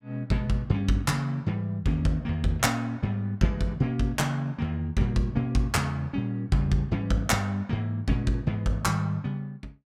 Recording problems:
none

